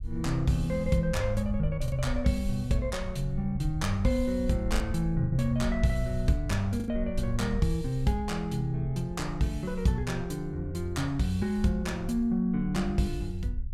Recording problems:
rumble; below 68 Hz, SNR 9 dB
lost packets; 1.8% of the sound replaced, filled with the last packet

